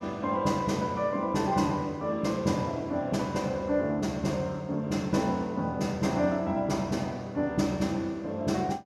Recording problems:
none

